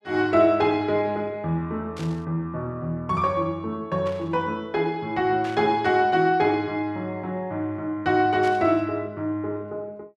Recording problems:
static burst; 4 times, first at 2 s; peak -11 dB vs average level

